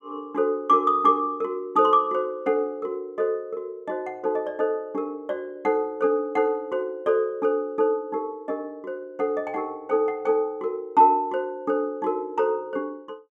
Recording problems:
none

